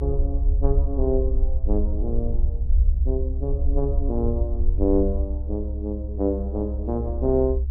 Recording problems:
rumble; below 66 Hz, SNR -1 dB

